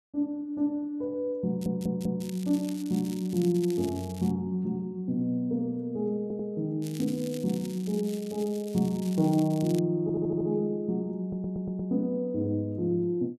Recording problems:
stutter; 4 times, first at 1.5 s
crackling; from 1.5 to 4.5 s and from 7 to 10 s; loose cable, SNR 18 dB

